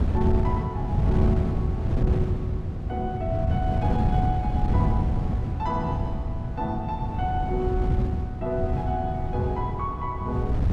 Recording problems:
wind on the microphone; below 150 Hz, SNR -4 dB

